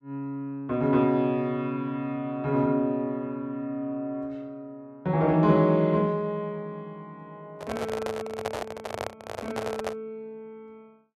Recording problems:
microphone handling noise; from 7.5 to 10 s; peak 0 dB vs average level

